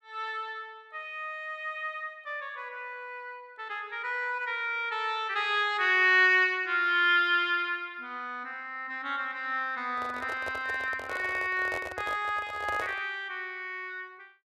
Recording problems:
handling noise; from 10 to 13 s; peak -5 dB vs average level

